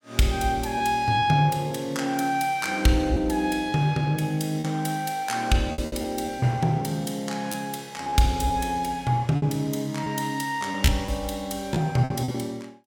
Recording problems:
lost packets; 5% of the sound replaced, filled with repeated pitch periods

